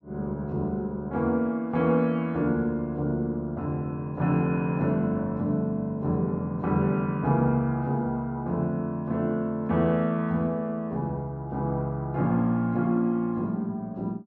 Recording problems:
none

